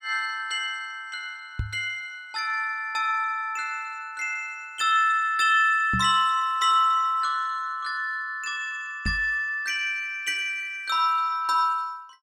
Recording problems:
microphone thump; at 1.5 s, at 6 s and at 9 s; peak -1 dB vs average level

